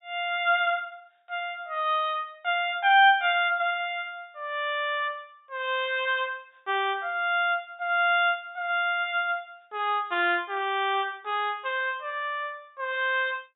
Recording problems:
treble cut off; nothing above 4 kHz

